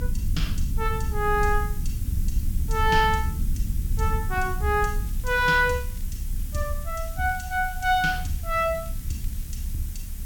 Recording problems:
hiss; slope 0 dB per octave, SNR 16 dB
rumble; below 72 Hz, SNR 5 dB
crackle; at 5 s and from 7 to 10 s; loose cable, SNR 28 dB

